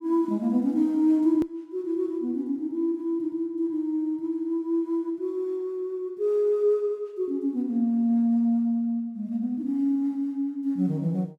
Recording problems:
hard cut with a click; at 1.5 s

